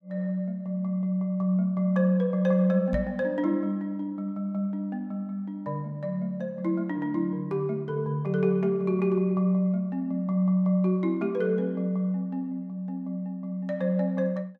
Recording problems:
knock on the microphone; at 3 s; peak -2 dB vs average level

